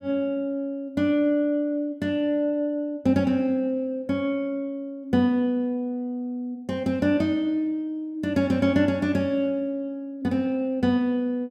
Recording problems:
none

